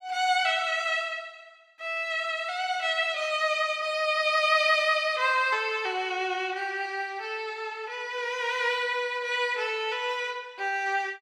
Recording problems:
none

